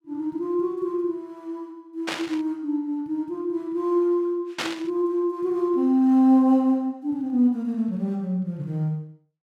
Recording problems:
burst of static; at 2 s and at 4.5 s; peak 0 dB vs average level

